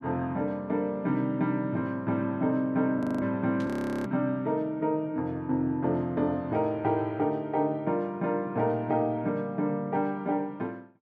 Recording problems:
audio freezing; at 3 s and at 3.5 s
static burst; at 3.5 s; peak -14 dB vs average level

